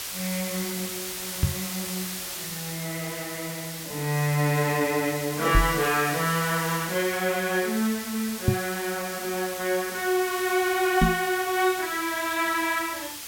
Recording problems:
background hiss; slope +2 dB per octave, SNR 7 dB
microphone thump; 4 times, first at 1.5 s; peak +8 dB vs average level

